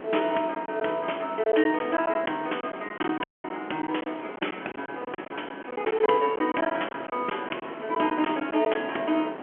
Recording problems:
telephone audio; 240 Hz to 3.3 kHz, G.711
background hiss; SNR 25 dB
wind noise; below 900 Hz, SNR 12 dB
packet loss; 9% of the sound replaced, filled with silence
audio cutting out; at 3 s

